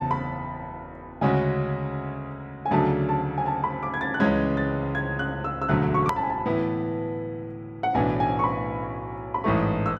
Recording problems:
hard cut with a click; at 6 s

